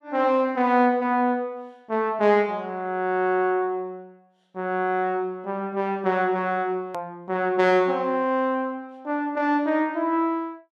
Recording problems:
edit click; at 7 s

